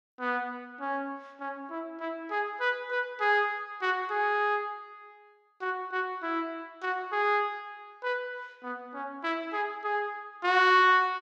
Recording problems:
none

